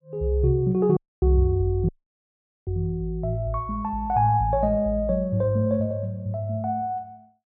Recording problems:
audio cutting out; at 1 s and at 2 s for 1 s

